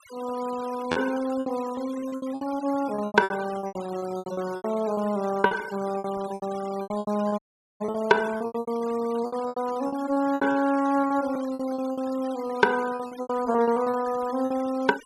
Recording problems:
denoising artefacts; signal-to-artefact ratio 18 dB
lost packets; 18% of the sound replaced, filled with repeated pitch periods
audio cutting out; at 7.5 s

